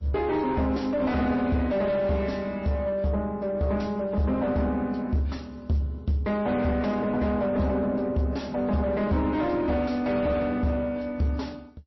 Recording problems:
codec artefacts; MP3, then MP3, log-spectral distance 2 dB, nothing above 5.7 kHz
distorted audio; soft clipping, signal-to-distortion ratio 7 dB

